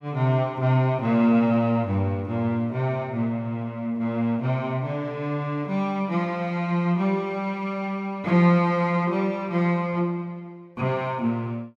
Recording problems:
none

